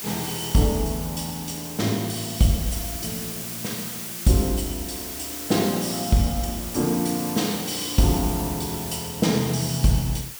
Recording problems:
background hiss; slope 0 dB per octave, SNR 7 dB

